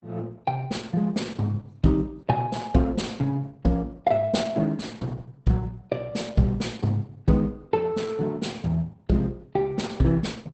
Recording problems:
lossy compression; Opus, log-spectral distance 3 dB, nothing above 8.2 kHz

